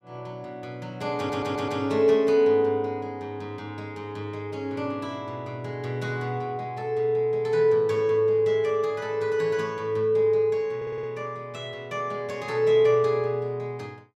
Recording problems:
audio stuttering; at 1 s and at 11 s

